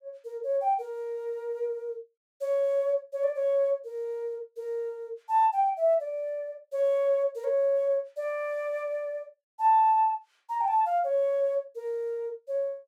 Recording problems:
none

